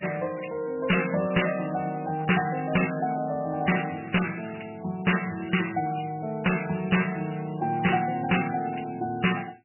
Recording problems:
lossy compression; MP3, log-spectral distance 10 dB, nothing above 2.9 kHz
distorted audio; hard clipping, signal-to-distortion ratio 9 dB

